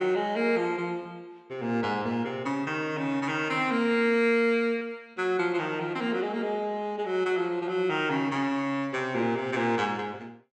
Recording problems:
packet loss; 1.2% of the sound replaced, filled with repeated pitch periods

